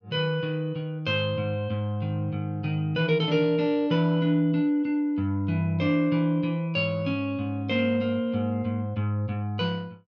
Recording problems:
none

